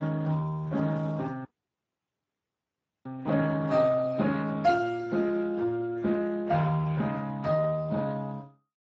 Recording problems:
lossy codec; AAC, then Speex, log-spectral distance 3 dB, nothing above 7.3 kHz
dropout; at 1.5 s for 1.5 s

